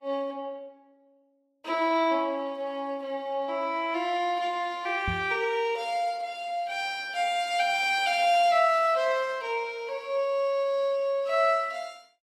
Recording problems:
codec artefacts; Vorbis, log-spectral distance 2 dB, nothing above 14.3 kHz
microphone thump; at 5 s; peak -2 dB vs average level

